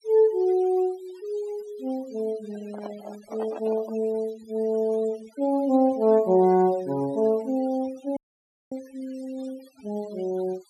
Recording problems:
noise reduction artefacts; signal-to-artefact ratio 23 dB
microphone handling noise; from 2.5 to 4 s; peak -7 dB vs average level
audio cutting out; at 8 s for 0.5 s

